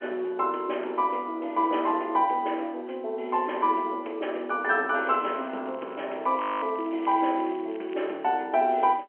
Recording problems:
phone line; 280 Hz to 3.2 kHz, G.711
crackle; from 5 to 8 s; loose cable, SNR 25 dB
frozen audio; at 6.5 s

